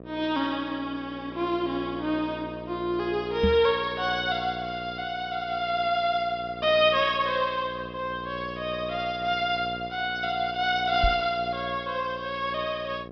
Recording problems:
low-pass filter; nothing above 5.5 kHz
hum; 60 Hz, harmonics up to 1.3 kHz, SNR 14 dB
microphone bump; at 3.5 s and at 11 s; peak +5 dB vs average level

